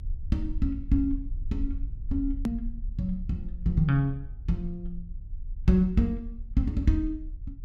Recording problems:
rumble; below 52 Hz, strongest tone 34 Hz, SNR 9 dB
edit click; at 2.5 s

